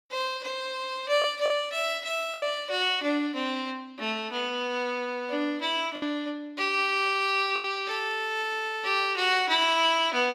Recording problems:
packet loss; 3% of the sound replaced, filled with the last packet

